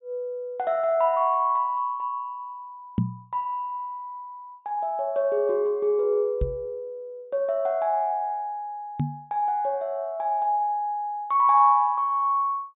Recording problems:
treble missing; nothing above 4 kHz
knock on the microphone; at 3 s, at 6.5 s and at 9 s; peak +4 dB vs average level

